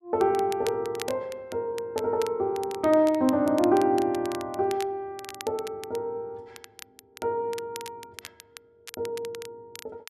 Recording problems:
crackle; vinyl, SNR 17 dB

